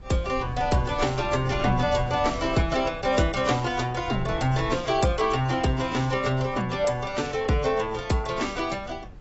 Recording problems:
codec artefacts; AAC, log-spectral distance 4 dB, nothing above 7.8 kHz
wind noise; below 120 Hz, SNR 15 dB

